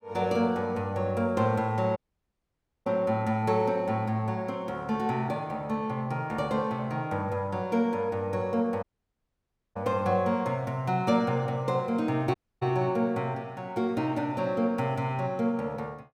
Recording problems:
audio cutting out; at 2 s for 1 s, at 9 s for 1 s and at 12 s

